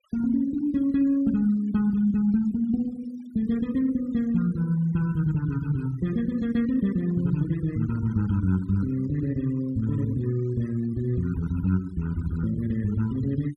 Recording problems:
noise reduction artefacts; signal-to-artefact ratio 24 dB

